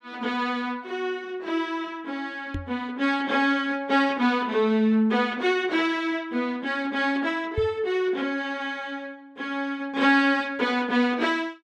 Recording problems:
microphone bump; at 2.5 s and at 7.5 s; peak -2 dB vs average level

